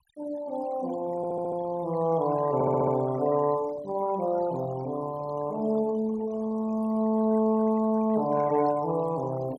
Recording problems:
noise reduction artefacts; signal-to-artefact ratio 20 dB
audio stuttering; at 1 s and at 2.5 s

